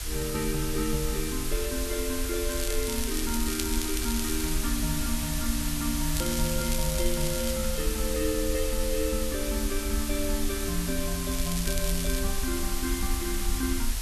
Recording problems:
hiss; slope +1 dB per octave, SNR 1 dB
low-frequency rumble; below 58 Hz, SNR 3 dB
crackling; from 2.5 to 4.5 s, from 6 to 7.5 s and at 11 s; loose cable, SNR 5 dB

